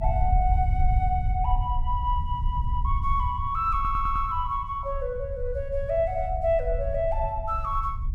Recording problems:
rumble; below 76 Hz, SNR 2 dB
stutter; at 4 s

